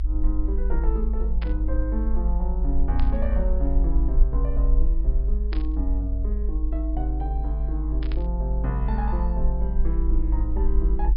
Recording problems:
treble missing; nothing above 5.5 kHz
rumble; below 52 Hz, SNR -7 dB
burst of static; 4 times, first at 1.5 s; peak -2 dB vs average level

